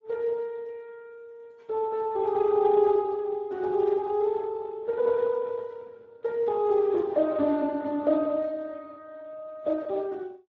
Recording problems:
lossy codec; AAC, then Speex, log-spectral distance 2 dB

